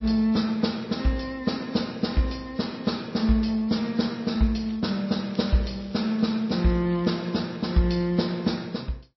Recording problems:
codec artefacts; MP3, log-spectral distance 4 dB, nothing above 5.7 kHz
crackling; from 4.5 to 7.5 s; loose cable, SNR 26 dB

